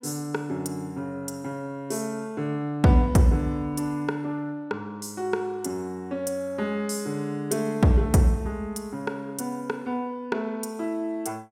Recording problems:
none

